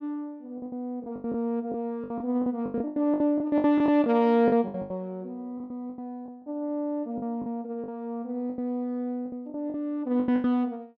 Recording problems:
lost packets; 15% of the sound replaced, filled with the last packet

